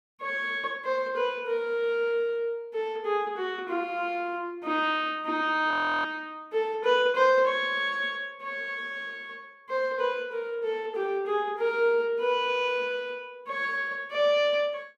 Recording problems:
audio freezing; at 5.5 s

